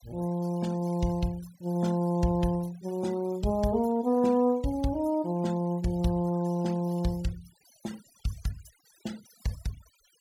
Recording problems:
denoising artefacts; signal-to-artefact ratio 22 dB

